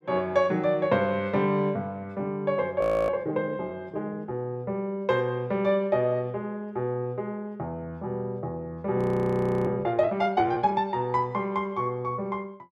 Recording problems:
frozen audio; at 3 s and at 9 s for 0.5 s

